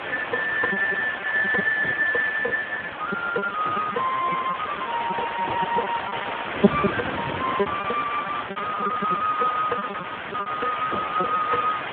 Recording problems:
phone line; 240 Hz to 2.8 kHz, Speex
background hiss; SNR 4 dB
wind on the microphone; below 420 Hz, SNR 6 dB
packet loss; 13% of the sound replaced, filled with repeated pitch periods
crackling; from 8 to 11 s; loose cable, SNR 27 dB

